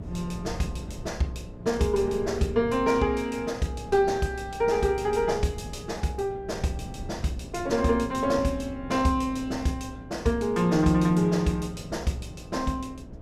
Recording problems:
electrical hum; 60 Hz, harmonics up to 660 Hz, SNR 20 dB
wind on the microphone; below 180 Hz, SNR 16 dB

